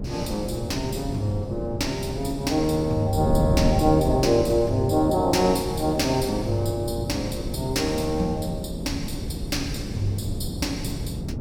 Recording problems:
electrical hum; 60 Hz, harmonics up to 540 Hz, SNR 21 dB
wind noise; below 250 Hz, SNR 6 dB

